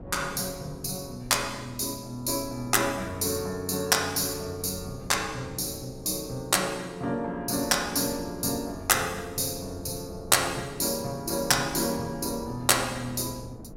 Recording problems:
wind noise; below 350 Hz, SNR 18 dB

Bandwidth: 16 kHz